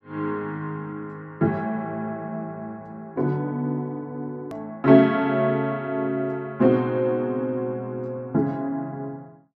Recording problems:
hard cut with a click; at 4.5 s

